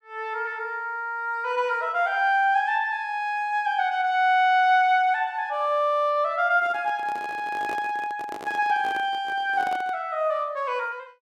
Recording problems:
handling noise; from 6.5 to 10 s; peak -9 dB vs average level

